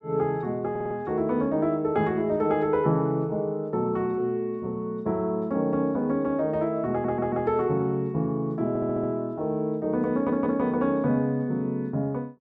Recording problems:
stutter; 4 times, first at 0.5 s

